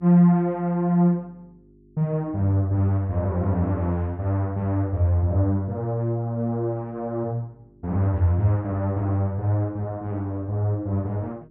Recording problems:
hum; 50 Hz, harmonics up to 400 Hz, SNR 29 dB

